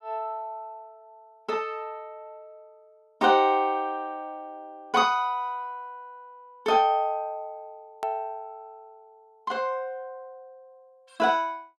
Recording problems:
edit click; at 8 s

